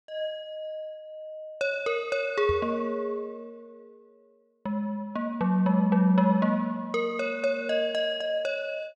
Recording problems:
microphone bump; at 2.5 s; peak -4 dB vs average level

